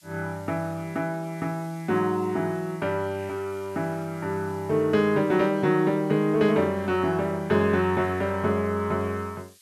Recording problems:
hiss; SNR 28 dB

